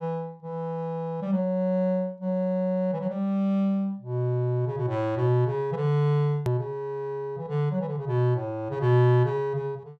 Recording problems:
hard cut with a click; at 6.5 s

